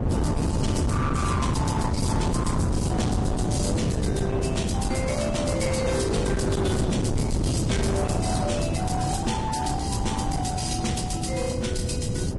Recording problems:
lossy codec; Vorbis, log-spectral distance 5 dB, nothing above 11 kHz
distorted audio; hard clipping, uneven, signal-to-distortion ratio 5 dB
wind noise; below 320 Hz, SNR -2 dB

